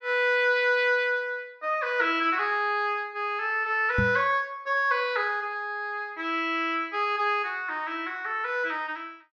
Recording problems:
microphone bump; at 4 s; peak +2 dB vs average level

